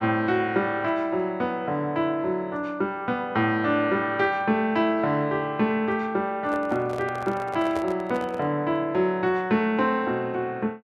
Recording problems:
handling noise; from 6.5 to 8.5 s; peak -6 dB vs average level

